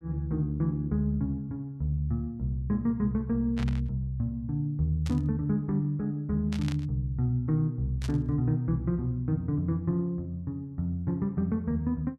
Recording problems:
burst of static; 4 times, first at 3.5 s; peak -7 dB vs average level

